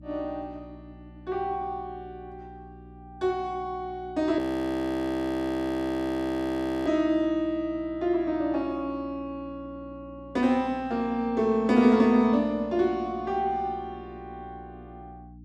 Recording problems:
electrical hum; 60 Hz, harmonics up to 300 Hz, SNR 22 dB
audio freezing; at 4.5 s for 2.5 s

